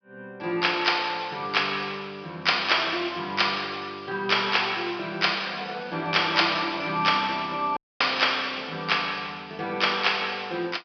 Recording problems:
treble missing; nothing above 5.5 kHz
audio cutting out; at 8 s

